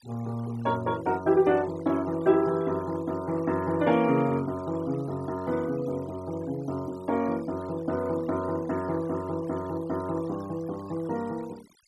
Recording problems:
noise reduction artefacts; signal-to-artefact ratio 21 dB

